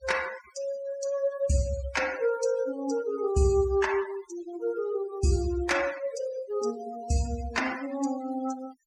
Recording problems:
denoising artefacts; signal-to-artefact ratio 15 dB

